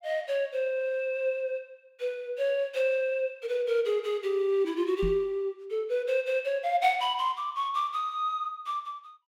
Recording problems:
knock on the microphone; at 5 s; peak 0 dB vs average level

